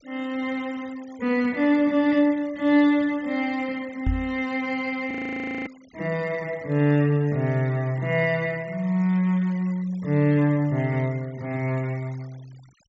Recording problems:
treble cut off; nothing above 8 kHz
denoising artefacts; signal-to-artefact ratio 25 dB
knock on the microphone; at 4 s; peak +2 dB vs average level
frozen audio; at 5 s for 0.5 s

